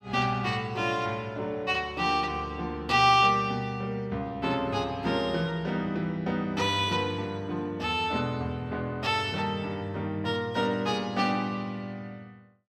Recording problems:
none

